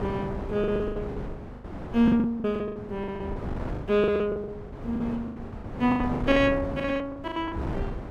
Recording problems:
wind on the microphone; below 440 Hz, SNR 9 dB
packet loss; 21% of the sound replaced, filled with the last packet

